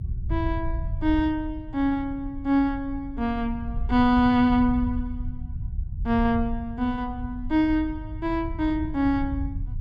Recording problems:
rumble; below 86 Hz, SNR 8 dB

